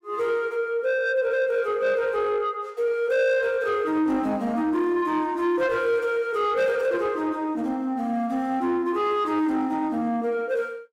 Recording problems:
distortion; soft clipping, signal-to-distortion ratio 12 dB

